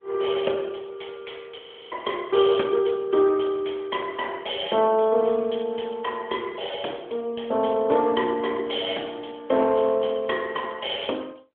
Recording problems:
phone line; 260 Hz to 3.4 kHz, AMR-NB
frozen audio; at 1.5 s

